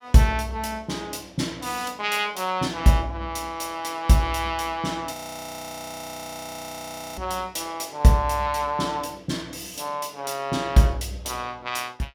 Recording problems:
audio freezing; at 5 s for 2 s

